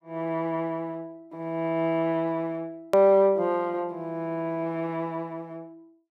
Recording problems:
edit click; at 3 s

